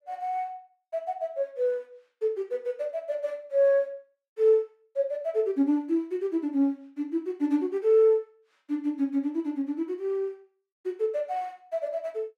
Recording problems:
none

